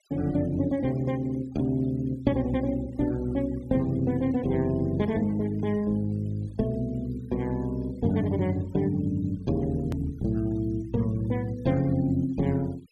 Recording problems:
noise reduction artefacts; signal-to-artefact ratio 25 dB
edit click; at 10 s

